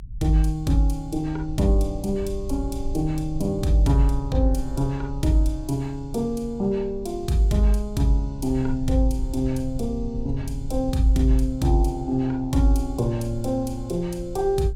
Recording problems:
rumble; below 66 Hz, SNR 11 dB

